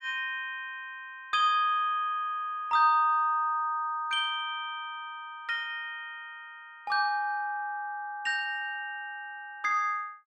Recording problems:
none

